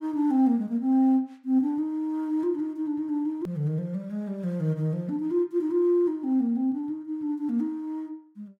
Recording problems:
edit click; at 3.5 s

